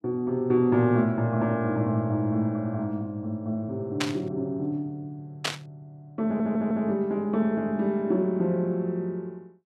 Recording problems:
static burst; at 4 s and at 5.5 s; peak +4 dB vs average level
stutter; at 6.5 s

